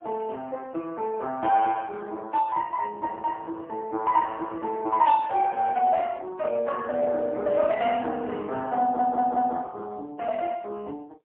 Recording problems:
phone line; 320 Hz to 3.6 kHz, AMR-NB, then MP3
stutter; at 9 s

